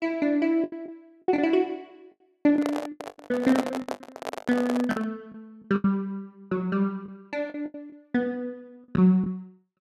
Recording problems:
packet loss; 11% of the sound replaced, filled with the last packet
handling noise; from 2.5 to 5 s; peak +3 dB vs average level

